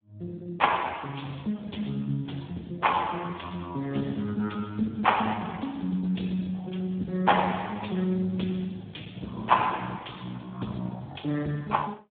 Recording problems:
telephone audio; 150 Hz to 3.6 kHz, Speex

